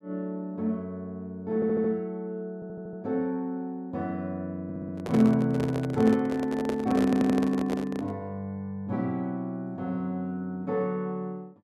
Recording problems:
audio stuttering; 4 times, first at 1.5 s
microphone handling noise; from 4.5 to 8 s; peak 0 dB vs average level

